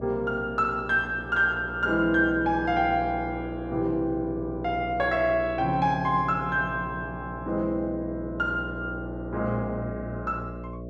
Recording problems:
electrical hum; 60 Hz, harmonics up to 660 Hz, SNR 11 dB

